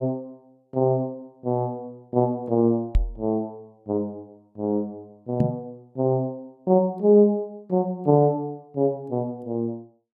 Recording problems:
microphone bump; at 3 s and at 5.5 s; peak +6 dB vs average level

